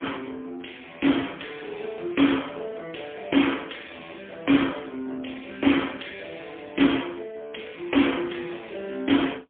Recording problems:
phone line; 190 Hz to 3.4 kHz, AMR-NB, then MP3
crackling; from 0.5 to 3.5 s; loose cable, SNR 28 dB

